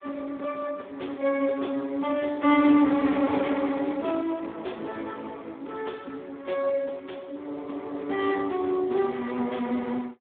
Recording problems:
phone line; 220 Hz to 3.5 kHz, Speex

